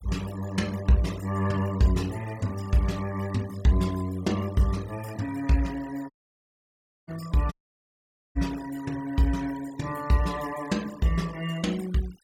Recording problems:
denoising artefacts; signal-to-artefact ratio 19 dB
dropout; at 6 s for 1 s and at 7.5 s for 1 s

